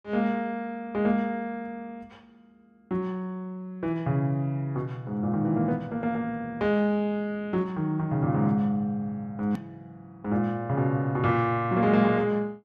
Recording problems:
hard cut with a click; at 9.5 s

